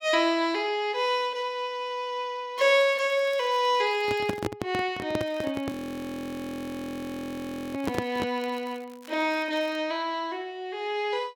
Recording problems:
crackle; from 2.5 to 4.5 s and from 5 to 10 s; loose cable, SNR 23 dB
handling noise; from 4 to 8.5 s; peak +3 dB vs average level
audio freezing; at 5.5 s for 2 s

